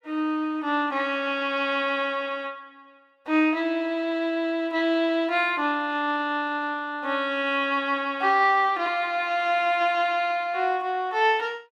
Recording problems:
none

